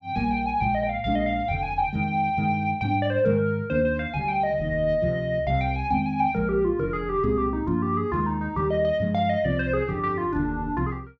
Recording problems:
none

